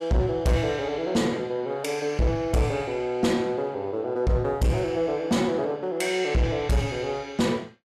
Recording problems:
distortion; soft clipping, signal-to-distortion ratio 10 dB

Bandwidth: 15 kHz